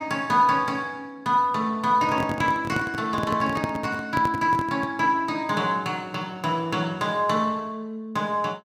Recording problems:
handling noise; from 2 to 5 s; peak 0 dB vs average level

